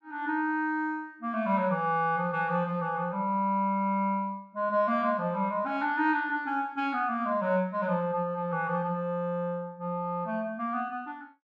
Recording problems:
none

